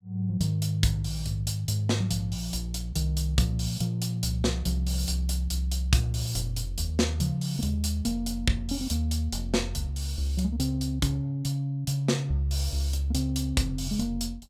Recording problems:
none

